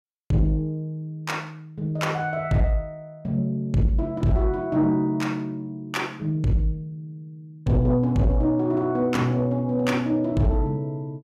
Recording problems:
distorted audio; soft clipping, signal-to-distortion ratio 11 dB

